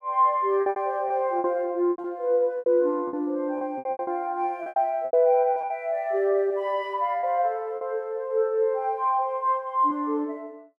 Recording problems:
packet loss; 10% of the sound replaced, filled with repeated pitch periods

